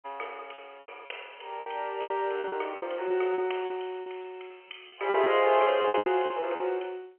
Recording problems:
phone line; 320 Hz to 3.2 kHz, G.711
packet loss; 15% of the sound replaced, filled with repeated pitch periods

